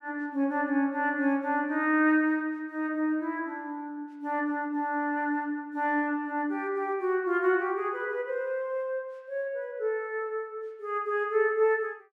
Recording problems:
none

